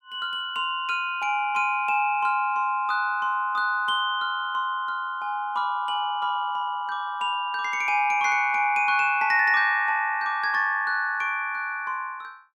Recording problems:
none

